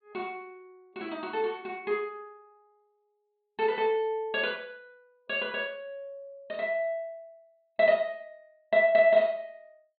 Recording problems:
low-pass filter; nothing above 4.4 kHz

